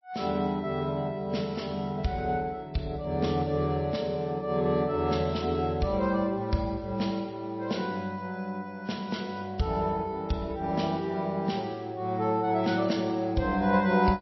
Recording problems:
codec artefacts; MP3, log-spectral distance 2 dB, nothing above 5.7 kHz

